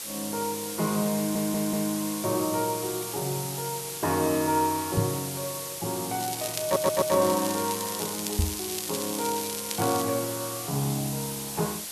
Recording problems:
background hiss; slope +1 dB per octave, SNR 4 dB
stutter; at 1 s and at 6.5 s
knock on the microphone; at 5 s and at 8.5 s; peak +7 dB vs average level
crackling; from 6 to 10 s; loose cable, SNR 6 dB

